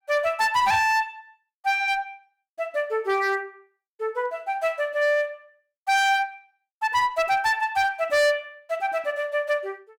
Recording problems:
distorted audio; hard clipping, uneven, signal-to-distortion ratio 10 dB

